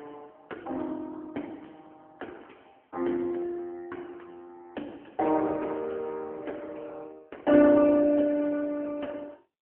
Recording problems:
phone line; 240 Hz to 3.2 kHz, AMR-NB

